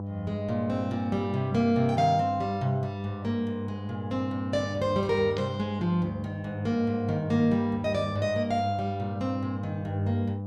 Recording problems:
hum; 50 Hz, harmonics up to 1 kHz, SNR 7 dB

